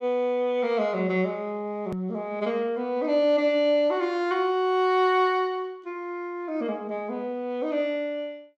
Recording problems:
hard cut with a click; at 2 s

